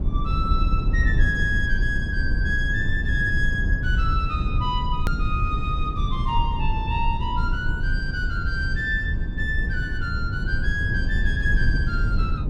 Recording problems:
rumble; below 88 Hz, SNR -1 dB
hard cut with a click; at 5 s

